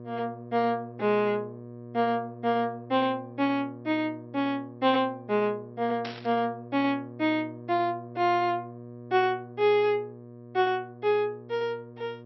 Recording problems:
low-pass filter; nothing above 5.6 kHz
hum; 60 Hz, harmonics up to 1.2 kHz, SNR 16 dB
static burst; at 6 s; peak -6 dB vs average level

